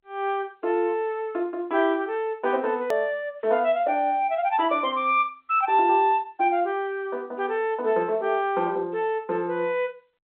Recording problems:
telephone audio; 280 Hz to 3.9 kHz, G.711
hard cut with a click; at 3 s

